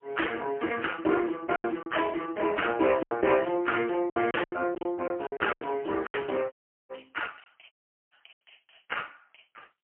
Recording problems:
phone line; 240 Hz to 3.1 kHz, AMR-NB, then MP3
lost packets; 9% of the sound replaced, filled with silence
dropout; at 6.5 s and at 7.5 s

